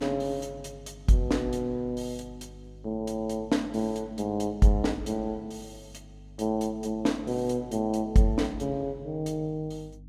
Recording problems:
hum; 50 Hz, harmonics up to 300 Hz, SNR 20 dB

